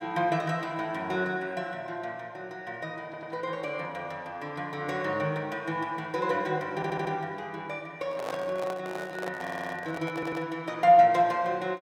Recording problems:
audio stuttering; 4 times, first at 3 s
handling noise; from 8 to 10 s; peak -1 dB vs average level

